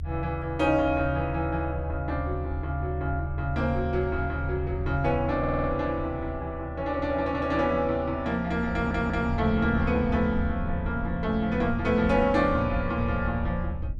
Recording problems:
low-frequency rumble; below 78 Hz, strongest tone 76 Hz, SNR 7 dB
audio stuttering; at 5.5 s and at 8.5 s

